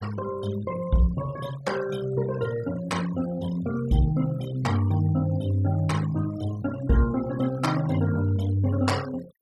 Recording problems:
noise reduction artefacts; signal-to-artefact ratio 16 dB

